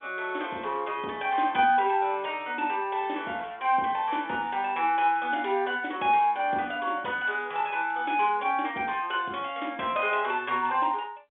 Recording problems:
telephone audio; 240 Hz to 3.6 kHz, G.711

